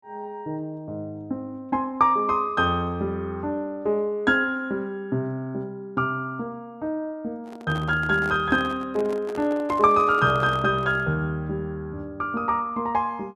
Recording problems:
handling noise; from 7.5 to 11 s; peak -7 dB vs average level

